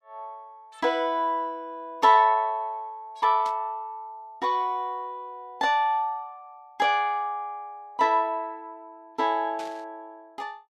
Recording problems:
burst of static; at 3.5 s and at 9.5 s; peak -13 dB vs average level

